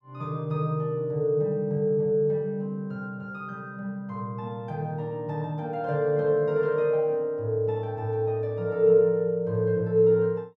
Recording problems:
none

